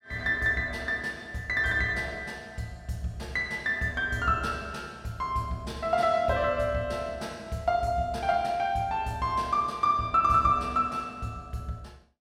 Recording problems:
none

